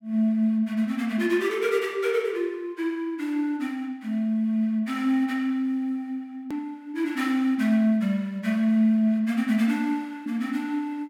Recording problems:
edit click; at 6.5 s

